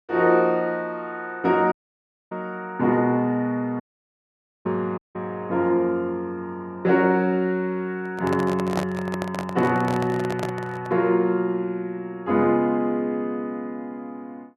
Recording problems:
audio cutting out; at 1.5 s for 0.5 s, at 4 s for 1 s and at 5 s
handling noise; from 8 to 11 s; peak +2 dB vs average level

